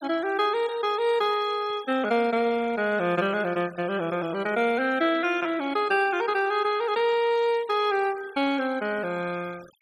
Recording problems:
denoising artefacts; signal-to-artefact ratio 21 dB

